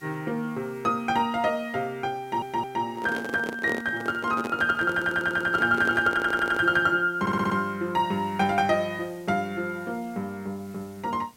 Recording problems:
hiss; slope -2 dB per octave, SNR 29 dB
stutter; 4 times, first at 2 s
handling noise; from 3 to 7 s; peak -2 dB vs average level

